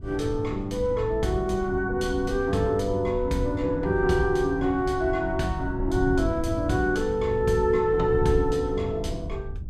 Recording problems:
wind noise; below 110 Hz, SNR 10 dB

